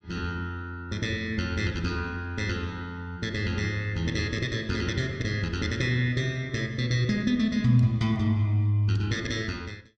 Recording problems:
none

